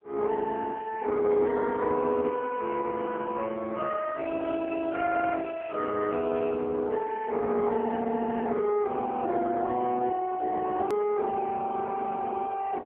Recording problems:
phone line; 260 Hz to 3.1 kHz, AMR-NB
edit click; at 11 s

